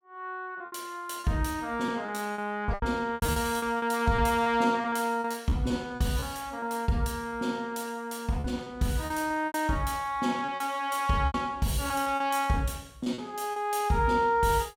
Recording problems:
lost packets; 10% of the sound replaced, filled with repeated pitch periods

